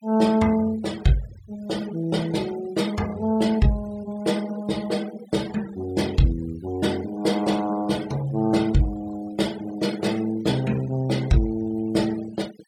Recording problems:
noise reduction artefacts; signal-to-artefact ratio 19 dB

